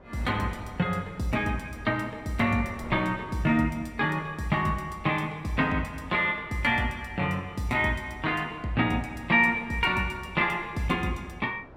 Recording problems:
wind noise; below 760 Hz, SNR 21 dB

